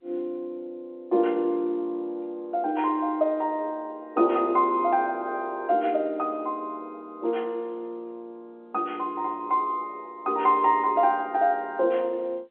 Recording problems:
telephone audio; 280 Hz to 3.8 kHz, G.711

